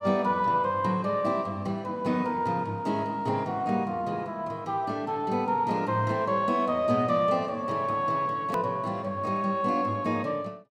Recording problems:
hard cut with a click; at 8.5 s

